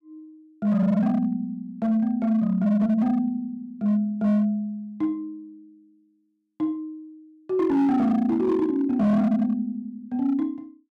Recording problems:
distorted audio; hard clipping, signal-to-distortion ratio 11 dB

